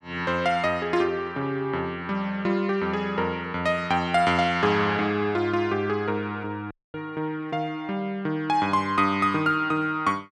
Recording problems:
audio cutting out; at 6.5 s

